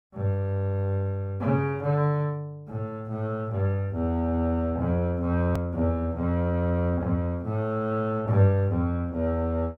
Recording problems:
edit click; at 5.5 s

